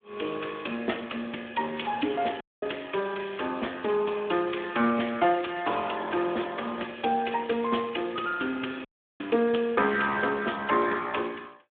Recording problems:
telephone audio; 220 Hz to 3.6 kHz, Speex
dropout; at 2.5 s and at 9 s

